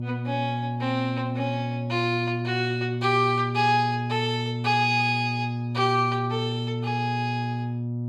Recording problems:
hum; 60 Hz, harmonics up to 600 Hz, SNR 4 dB

